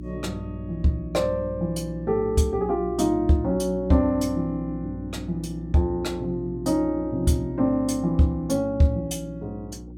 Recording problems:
electrical hum; 60 Hz, harmonics up to 360 Hz, SNR 12 dB

